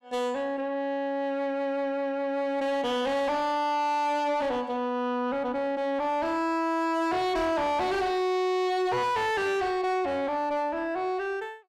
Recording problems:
distorted audio; soft clipping, signal-to-distortion ratio 6 dB

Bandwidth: 16 kHz